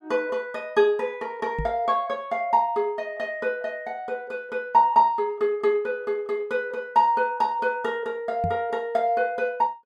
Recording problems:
microphone thump; at 1.5 s and at 8.5 s; peak -1 dB vs average level

